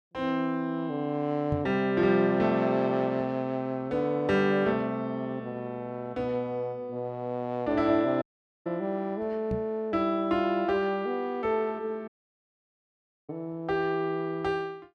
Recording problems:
microphone bump; at 1.5 s and at 9.5 s; peak +1 dB vs average level
audio cutting out; at 8 s and at 12 s for 1 s

